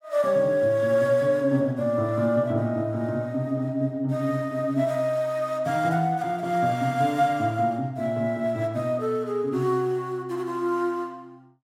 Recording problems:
none

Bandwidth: 16 kHz